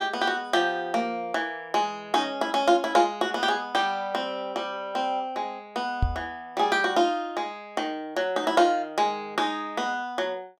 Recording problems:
microphone thump; at 6 s; peak +5 dB vs average level

